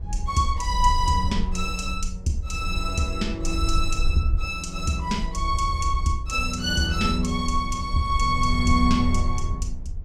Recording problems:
rumble; below 66 Hz, SNR 5 dB

